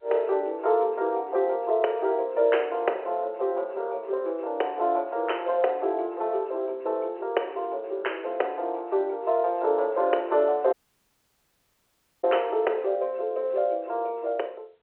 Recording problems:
telephone audio; 340 Hz to 3.1 kHz, G.711
dropout; at 11 s for 1.5 s

